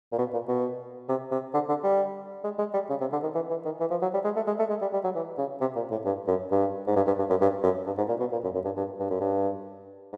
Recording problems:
none

